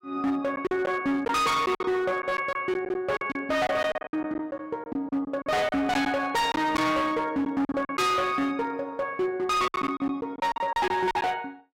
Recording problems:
distortion; hard clipping, signal-to-distortion ratio 7 dB
lost packets; 10% of the sound replaced, filled with silence
burst of static; at 9.5 s; peak -12 dB vs average level

